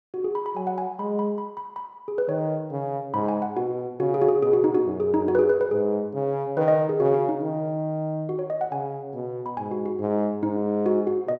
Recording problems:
none

